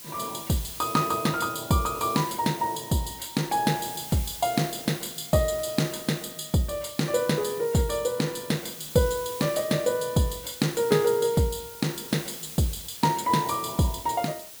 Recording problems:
background hiss; slope 0 dB per octave, SNR 12 dB

